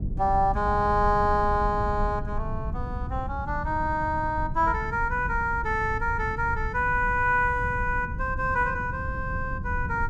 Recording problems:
low-frequency rumble; below 120 Hz, SNR 8 dB

